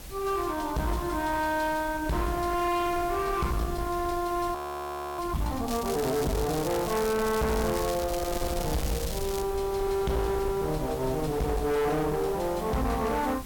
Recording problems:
distorted audio; hard clipping, uneven, signal-to-distortion ratio 7 dB
background hiss; slope -1 dB per octave, SNR 17 dB
wind on the microphone; below 290 Hz, SNR 12 dB
frozen audio; at 4.5 s for 0.5 s
crackle; from 5.5 to 9.5 s; loose cable, SNR 9 dB

